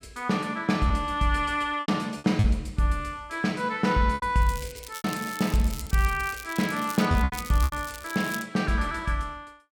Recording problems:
lost packets; 6% of the sound replaced, filled with repeated pitch periods
crackling; from 4.5 to 8.5 s; loose cable, SNR 14 dB

